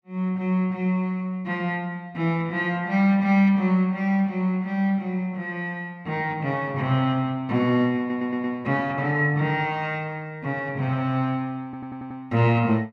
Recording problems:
stutter; at 8 s and at 12 s

